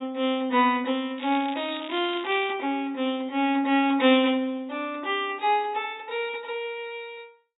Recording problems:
treble cut off; nothing above 4 kHz
crackling; from 1 to 2.5 s; loose cable, SNR 15 dB

